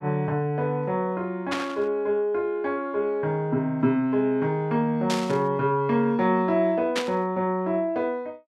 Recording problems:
burst of static; at 1.5 s, at 5 s and at 7 s; peak +1 dB vs average level

